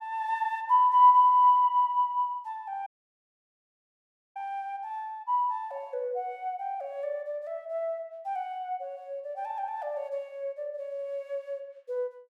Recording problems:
audio cutting out; at 3 s for 1.5 s

